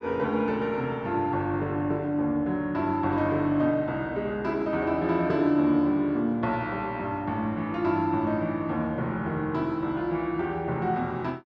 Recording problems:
none

